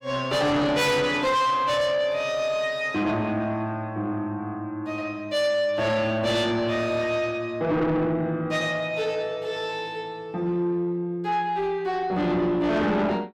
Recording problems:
distorted audio; soft clipping, signal-to-distortion ratio 8 dB

